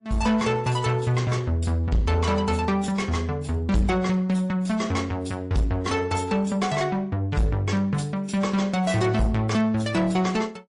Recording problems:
codec artefacts; MP3, then AAC, log-spectral distance 2 dB, nothing above 10.4 kHz
distorted audio; soft clipping, signal-to-distortion ratio 10 dB

